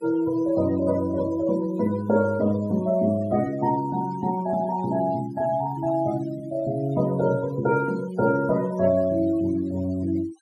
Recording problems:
denoising artefacts; signal-to-artefact ratio 20 dB

